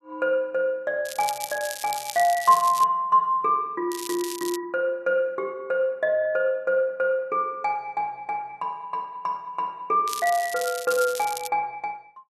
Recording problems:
crackling; from 1 to 3 s, at 4 s and from 10 to 11 s; loose cable, SNR 10 dB

